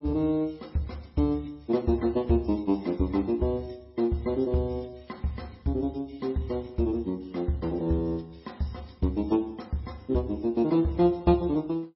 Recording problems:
codec artefacts; MP3, log-spectral distance 2 dB, nothing above 5.5 kHz

